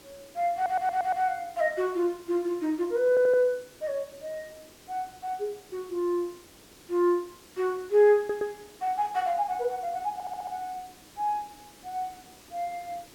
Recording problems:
hiss; SNR 23 dB
audio stuttering; 4 times, first at 0.5 s

